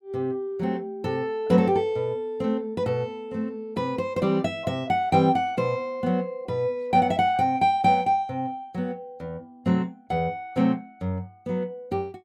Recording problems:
none

